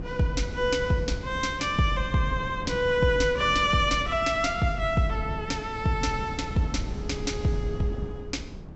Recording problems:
treble cut off; nothing above 7.7 kHz
wind on the microphone; below 240 Hz, SNR 10 dB

